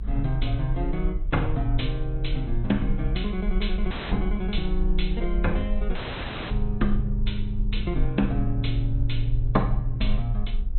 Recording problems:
treble cut off; nothing above 4.1 kHz
codec artefacts; Vorbis, log-spectral distance 2 dB
rumble; below 46 Hz, SNR 2 dB
wind noise; below 110 Hz, SNR 15 dB
audio cutting out; at 4 s and at 6 s for 0.5 s

